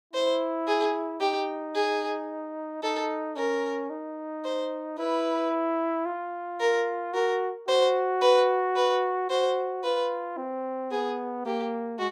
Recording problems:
none

